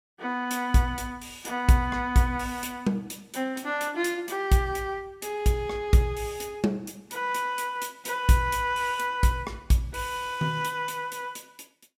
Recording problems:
none

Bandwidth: 16 kHz